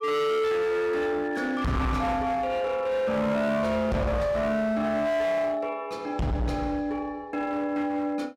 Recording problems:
distortion; hard clipping, signal-to-distortion ratio 7 dB

